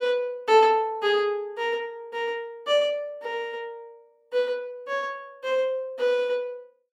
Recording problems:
none

